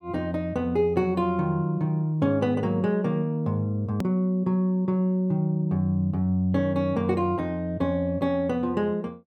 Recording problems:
click at an edit; at 4 s

